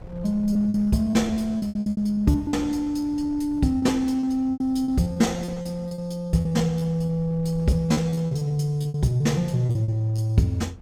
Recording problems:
wind noise; below 180 Hz, SNR 21 dB
lost packets; 18% of the sound replaced, filled with repeated pitch periods

